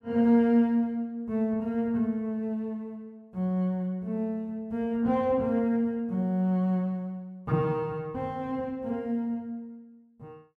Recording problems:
none

